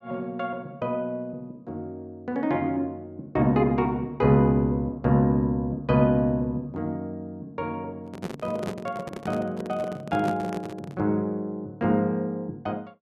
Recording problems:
microphone handling noise; from 8 to 11 s; peak -1 dB vs average level

